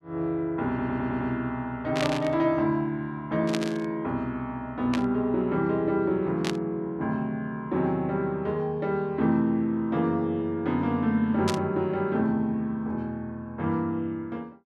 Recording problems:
stutter; at 0.5 s
burst of static; 5 times, first at 2 s; peak +1 dB vs average level

